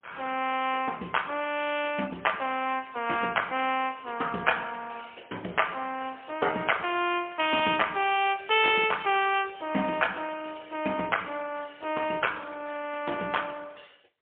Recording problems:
phone line; 260 Hz to 3.3 kHz, AMR-NB, then MP3

